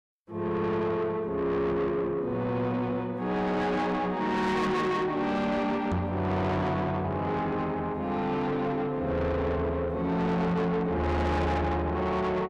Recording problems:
distorted audio; soft clipping, signal-to-distortion ratio 7 dB
knock on the microphone; at 6 s; peak +2 dB vs average level

